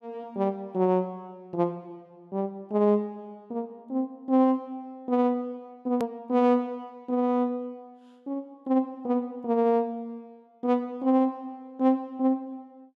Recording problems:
hard cut with a click; at 6 s

